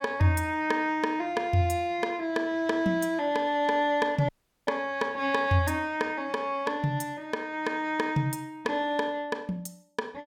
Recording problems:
audio cutting out; at 4.5 s

